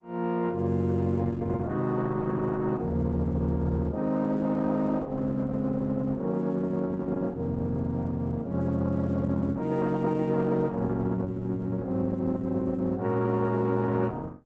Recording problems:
codec artefacts; Opus, log-spectral distance 3 dB, nothing above 7.8 kHz

